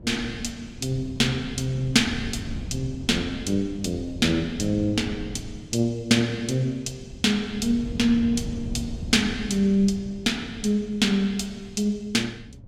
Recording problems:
wind noise; below 180 Hz, SNR 13 dB

